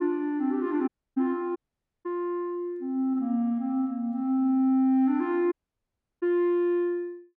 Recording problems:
dropout; at 1 s, at 1.5 s and at 5.5 s for 0.5 s

